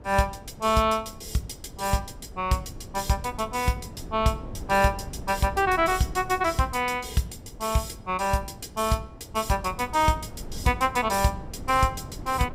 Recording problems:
wind on the microphone; below 260 Hz, SNR 16 dB

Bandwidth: 15.5 kHz